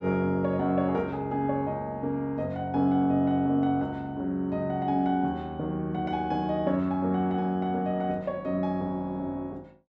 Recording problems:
none

